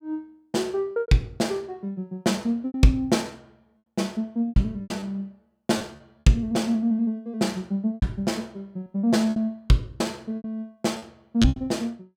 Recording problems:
packet loss; 9% of the sound replaced, filled with repeated pitch periods

